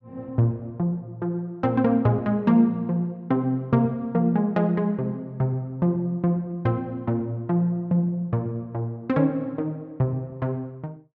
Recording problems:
none

